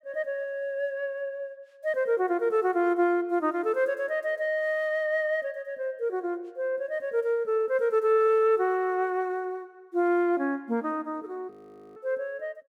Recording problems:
audio freezing; at 12 s

